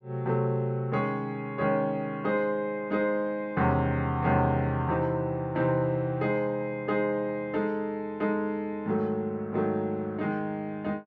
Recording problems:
none

